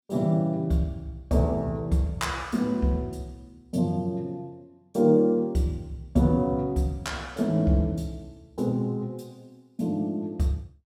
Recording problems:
none

